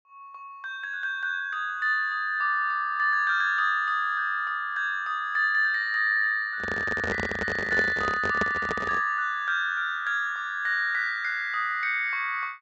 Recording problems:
low-pass filter; nothing above 8 kHz
microphone handling noise; from 6.5 to 9 s; peak 0 dB vs average level

